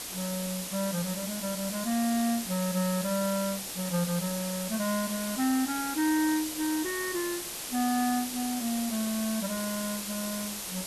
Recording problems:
hiss; slope -1 dB per octave, SNR 4 dB

